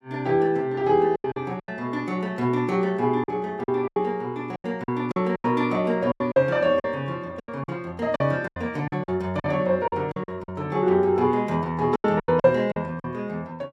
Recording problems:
packet loss; 11% of the sound replaced, filled with silence

